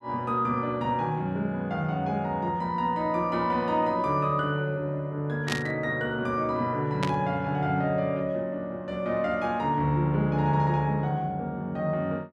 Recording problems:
static burst; at 5.5 s and at 7 s; peak +2 dB vs average level

